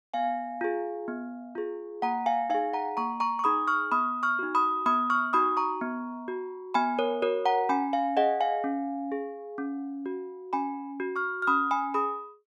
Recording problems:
none

